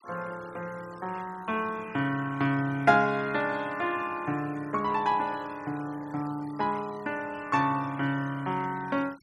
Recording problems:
denoising artefacts; signal-to-artefact ratio 22 dB

